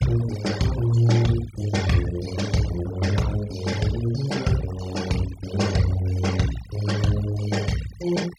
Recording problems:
noise reduction artefacts; signal-to-artefact ratio 14 dB

